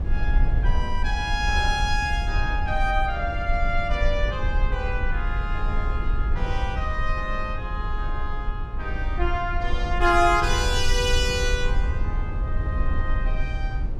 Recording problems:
rumble; below 62 Hz, SNR 1 dB

